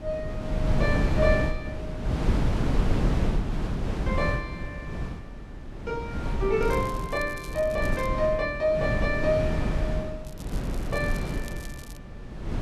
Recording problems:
wind noise; below 210 Hz, SNR 1 dB
crackle; from 6.5 to 8 s and from 10 to 12 s; loose cable, SNR 19 dB

